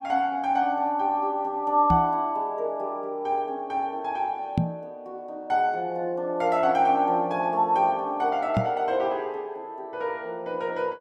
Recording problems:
microphone thump; at 2 s, at 4.5 s and at 8.5 s; peak +5 dB vs average level

